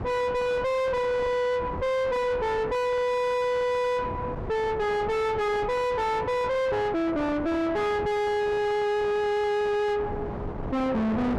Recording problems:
distortion; soft clipping, signal-to-distortion ratio 4 dB
wind noise; below 830 Hz, SNR 11 dB

